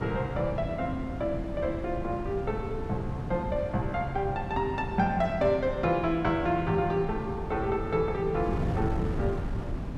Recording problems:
wind noise; below 230 Hz, SNR 6 dB

